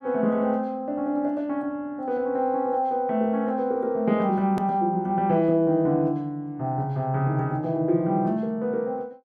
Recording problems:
click at an edit; at 4.5 s

